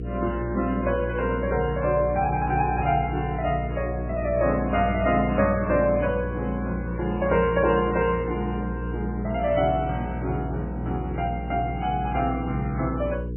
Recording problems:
codec artefacts; MP3, log-spectral distance 3 dB, nothing above 2.5 kHz
electrical hum; 60 Hz, harmonics up to 480 Hz, SNR 6 dB

